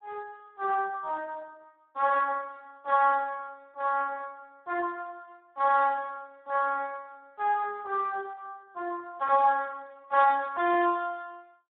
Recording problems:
phone line; 300 Hz to 3.6 kHz, Speex

